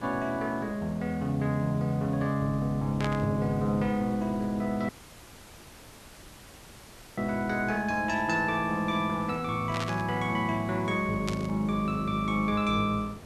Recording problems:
hiss; slope -6 dB per octave, SNR 17 dB
static burst; at 3 s, at 9.5 s and at 11 s; peak -3 dB vs average level
dropout; at 5 s for 2.5 s

